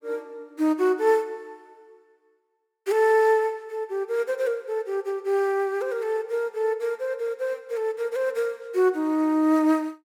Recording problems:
none

